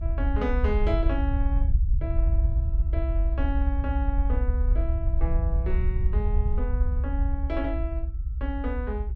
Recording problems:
rumble; below 70 Hz, SNR -7 dB

